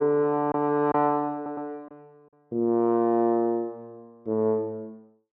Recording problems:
lost packets; 1.5% of the sound replaced, filled with silence
audio stuttering; at 1.5 s

